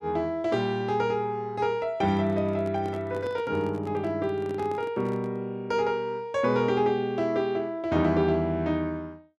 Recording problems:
microphone handling noise; from 2 to 5.5 s; peak -9 dB vs average level

